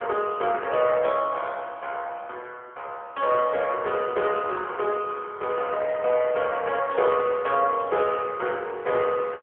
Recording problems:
phone line; 320 Hz to 3.3 kHz, AMR-NB

